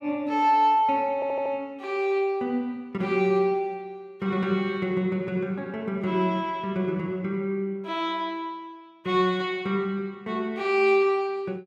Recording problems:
audio stuttering; at 1 s

